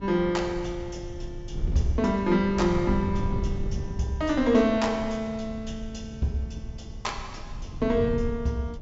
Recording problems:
treble missing; nothing above 8 kHz
wind on the microphone; below 120 Hz, SNR 9 dB

